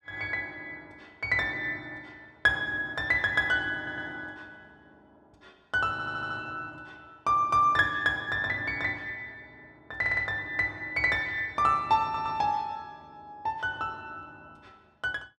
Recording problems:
stutter; 4 times, first at 4 s

